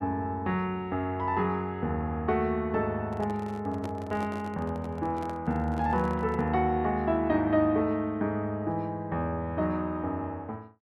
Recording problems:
handling noise; from 3 to 6.5 s; peak -7 dB vs average level

